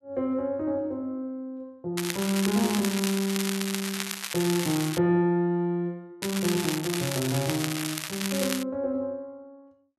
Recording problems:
crackling; from 2 to 5 s and from 6 to 8.5 s; loose cable, SNR 4 dB

